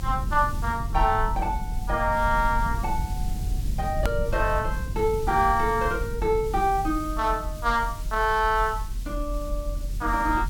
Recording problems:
hiss; slope +2 dB per octave, SNR 20 dB
low-frequency rumble; below 74 Hz, SNR 6 dB
edit click; at 4 s

